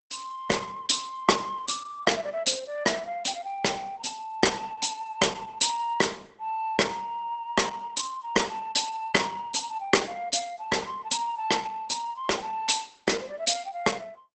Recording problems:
lossy compression; Opus, log-spectral distance 5 dB, nothing above 8.2 kHz

